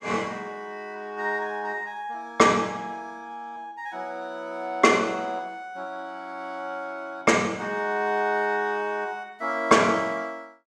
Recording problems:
none

